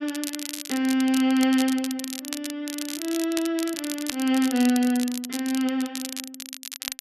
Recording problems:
crackling; vinyl, SNR 9 dB

